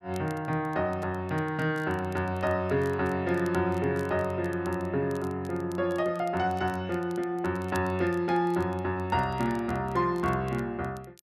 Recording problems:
crackle; vinyl, SNR 26 dB

